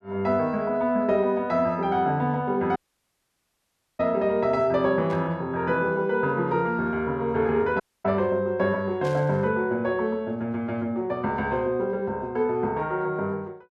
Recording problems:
dropout; at 3 s for 1 s and at 8 s
static burst; at 5 s and at 9 s; peak -13 dB vs average level

